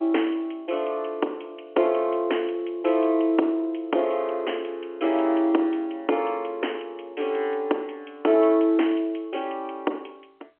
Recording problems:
phone line; 260 Hz to 3.2 kHz, G.711

